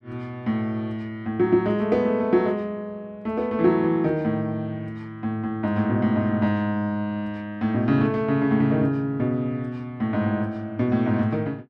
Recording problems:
none

